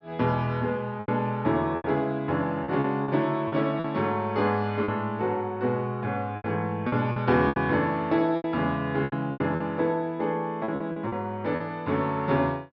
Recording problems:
treble cut off; nothing above 5.5 kHz
packet loss; 9% of the sound replaced, filled with repeated pitch periods

